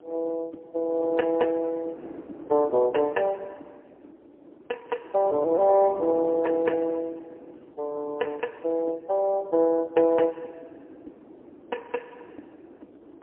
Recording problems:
phone line; 260 Hz to 3.1 kHz, AMR-NB, then MP3
wind noise; below 440 Hz, SNR 19 dB

